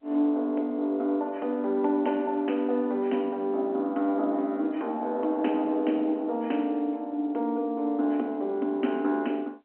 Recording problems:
phone line; 220 Hz to 3.1 kHz, G.711

